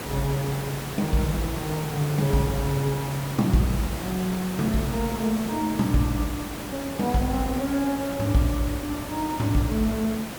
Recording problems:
background hiss; slope -5 dB per octave, SNR 8 dB

